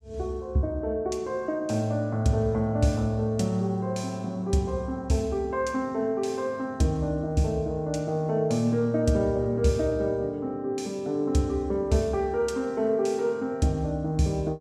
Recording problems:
none

